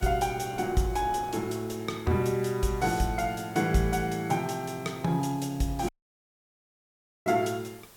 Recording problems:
hiss; slope -3 dB per octave, SNR 22 dB
wind on the microphone; below 740 Hz, SNR 22 dB
dropout; at 6 s for 1.5 s

